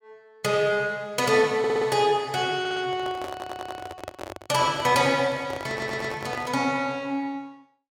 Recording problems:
audio stuttering; 4 times, first at 1.5 s
microphone handling noise; from 3 to 6.5 s; peak -7 dB vs average level

